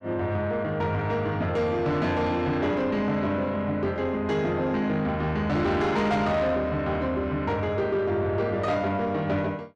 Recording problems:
distorted audio; soft clipping, signal-to-distortion ratio 11 dB

